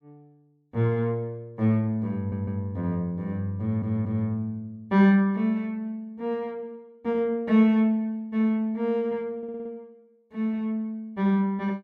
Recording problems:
audio stuttering; at 2 s, at 3.5 s and at 9.5 s

